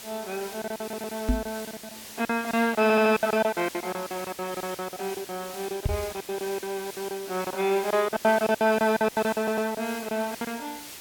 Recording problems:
hiss; SNR 13 dB
lost packets; 18% of the sound replaced, filled with silence
stutter; at 1 s, at 3 s and at 9.5 s
microphone thump; at 1.5 s and at 6 s; peak +5 dB vs average level

